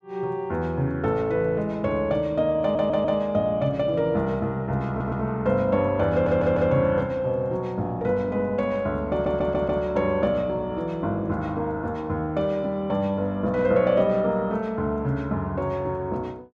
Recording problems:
audio stuttering; 4 times, first at 2.5 s

